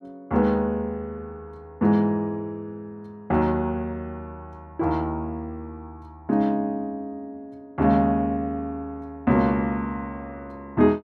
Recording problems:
none

